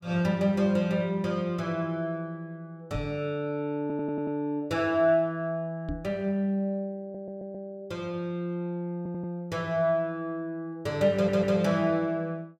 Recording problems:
microphone thump; at 3 s and at 6 s; peak -1 dB vs average level
stutter; 4 times, first at 4 s

